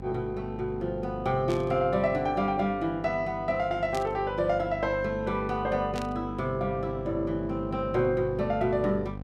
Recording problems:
electrical hum; 50 Hz, harmonics up to 1.1 kHz, SNR 11 dB
burst of static; at 1.5 s, at 4 s and at 6 s; peak -8 dB vs average level

